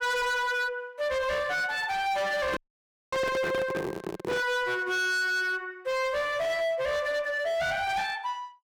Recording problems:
distortion; hard clipping, signal-to-distortion ratio 7 dB
microphone handling noise; from 2.5 to 4.5 s; peak 0 dB vs average level
audio cutting out; at 2.5 s for 0.5 s

